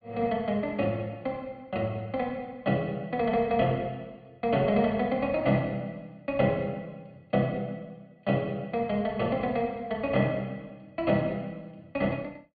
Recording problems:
treble missing; nothing above 4.6 kHz

